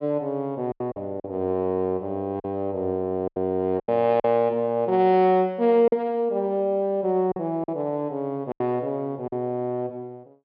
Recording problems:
treble missing; nothing above 5 kHz
lost packets; 6% of the sound replaced, filled with silence

